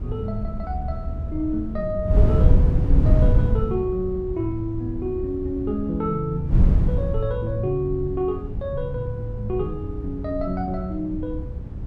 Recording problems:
wind on the microphone; below 110 Hz, SNR -1 dB

